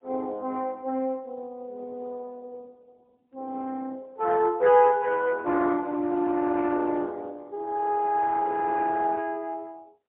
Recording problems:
telephone audio; 190 Hz to 2.9 kHz, AMR-NB, then MP3

